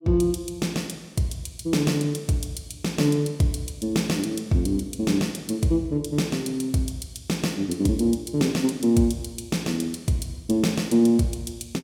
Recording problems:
none

